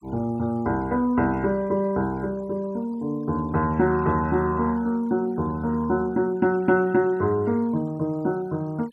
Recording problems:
noise reduction artefacts; signal-to-artefact ratio 27 dB

